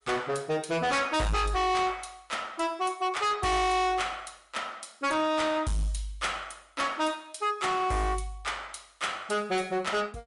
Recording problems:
lossy codec; MP3, log-spectral distance 4 dB, nothing above 11 kHz
distorted audio; hard clipping, signal-to-distortion ratio 6 dB

